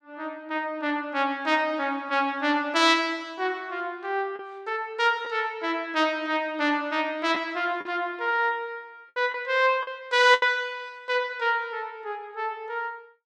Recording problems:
lost packets; 1.9% of the sound replaced, filled with the last packet

